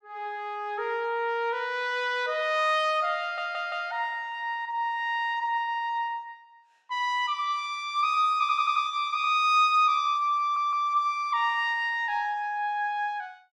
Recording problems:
stutter; at 3 s, at 8.5 s and at 10 s

